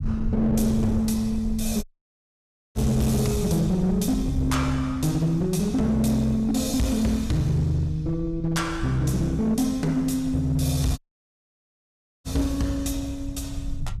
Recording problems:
distorted audio; hard clipping, uneven, signal-to-distortion ratio 11 dB
rumble; below 100 Hz, SNR 12 dB
dropout; at 2 s for 1 s and at 11 s for 1.5 s

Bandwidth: 14.5 kHz